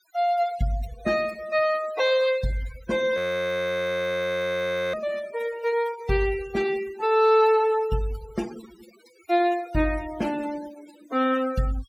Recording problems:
denoising artefacts; signal-to-artefact ratio 18 dB
frozen audio; at 3 s for 2 s

